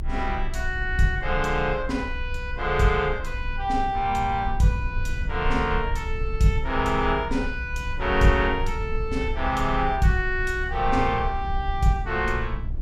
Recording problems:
rumble; below 62 Hz, strongest tone 22 Hz, SNR 7 dB

